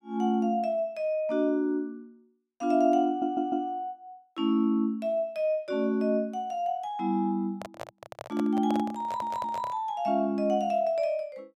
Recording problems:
stutter; at 3 s and at 9 s
microphone handling noise; from 7.5 to 10 s; peak -4 dB vs average level

